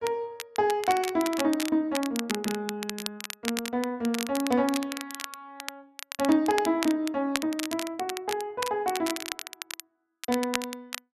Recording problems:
crackling; vinyl, SNR 8 dB

